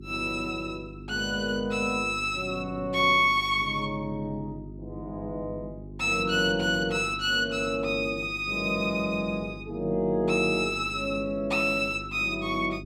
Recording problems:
hum; 50 Hz, harmonics up to 400 Hz, SNR 16 dB

